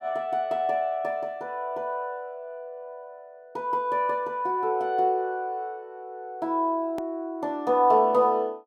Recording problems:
edit click; at 7 s

